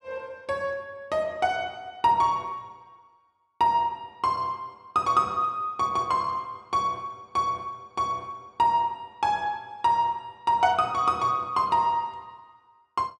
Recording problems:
none

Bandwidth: 12.5 kHz